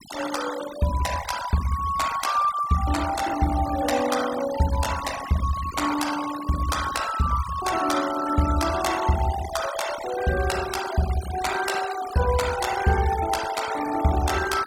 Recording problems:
denoising artefacts; signal-to-artefact ratio 11 dB

